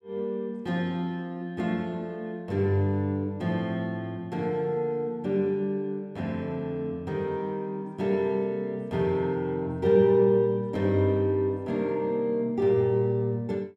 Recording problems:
none

